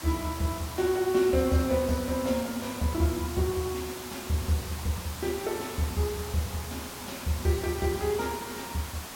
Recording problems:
background hiss; SNR 9 dB

